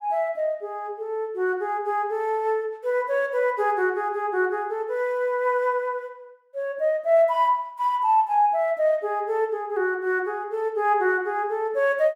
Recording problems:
none

